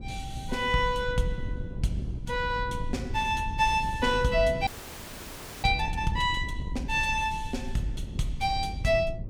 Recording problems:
wind noise; below 130 Hz, SNR 8 dB
frozen audio; at 4.5 s for 1 s

